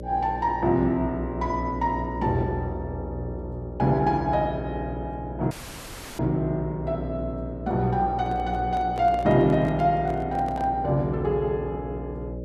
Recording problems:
hum; 60 Hz, harmonics up to 600 Hz, SNR 9 dB
audio cutting out; at 5.5 s for 0.5 s
handling noise; from 8 to 11 s; peak -9 dB vs average level

